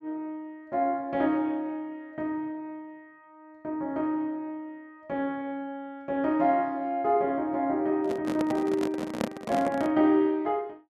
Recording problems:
handling noise; from 8 to 10 s; peak +3 dB vs average level

